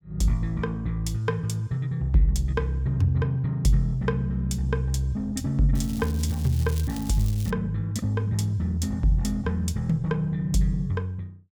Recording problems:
crackle; from 6 to 7.5 s; loose cable, SNR 17 dB

